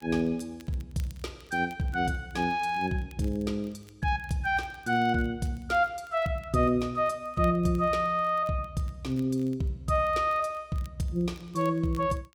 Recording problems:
crackle; vinyl, SNR 29 dB

